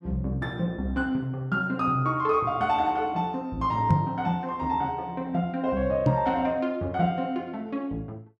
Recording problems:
microphone bump; at 4 s and at 6 s; peak +7 dB vs average level

